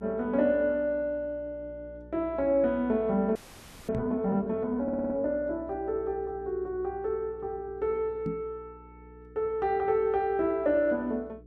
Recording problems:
electrical hum; 60 Hz, harmonics up to 480 Hz, SNR 22 dB
frozen audio; at 3.5 s for 0.5 s
knock on the microphone; at 4 s and at 8.5 s; peak -1 dB vs average level
stutter; at 5 s

